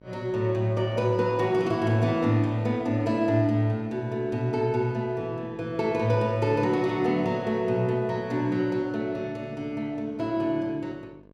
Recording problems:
hum; 50 Hz, harmonics up to 1.2 kHz, SNR 26 dB

